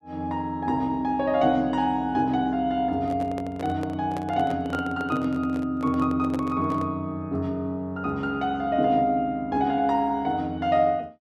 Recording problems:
microphone handling noise; from 3 to 7 s; peak -5 dB vs average level

